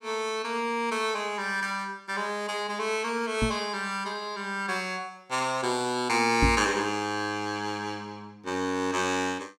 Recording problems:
microphone bump; at 3.5 s and at 6.5 s; peak +6 dB vs average level

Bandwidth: 17 kHz